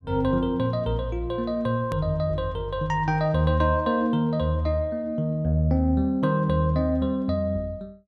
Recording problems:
hard cut with a click; at 2 s

